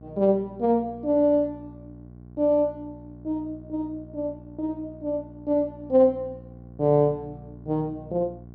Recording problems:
hum; 60 Hz, harmonics up to 780 Hz, SNR 20 dB

